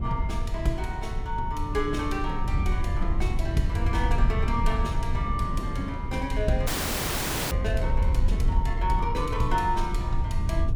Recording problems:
rumble; below 78 Hz, SNR -1 dB
wind noise; below 280 Hz, SNR 12 dB
frozen audio; at 6.5 s for 1 s

